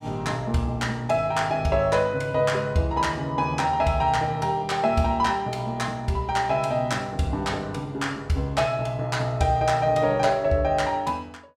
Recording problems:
none

